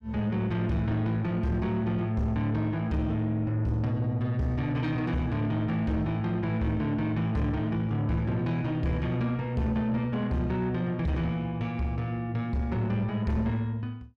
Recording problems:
distortion; soft clipping, signal-to-distortion ratio 12 dB

